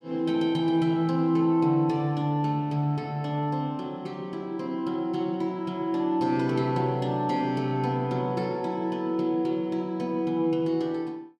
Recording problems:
none

